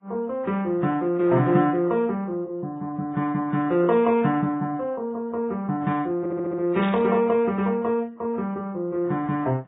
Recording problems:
lossy compression; AAC, then Vorbis, log-spectral distance 2 dB, nothing above 3.4 kHz
stutter; at 6 s
burst of static; at 7 s; peak -8 dB vs average level

